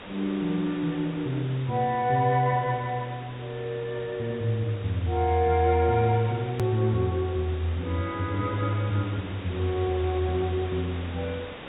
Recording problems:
treble missing; nothing above 4 kHz
hiss; SNR 14 dB
edit click; at 6.5 s

